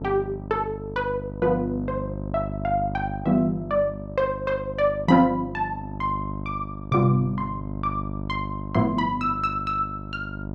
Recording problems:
hum; 50 Hz, harmonics up to 1 kHz, SNR 9 dB

